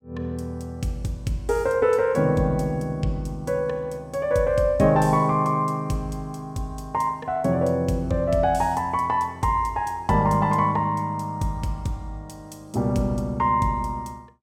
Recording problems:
none

